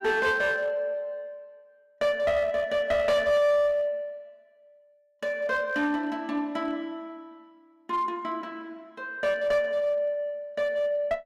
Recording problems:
distorted audio; hard clipping, uneven, signal-to-distortion ratio 11 dB

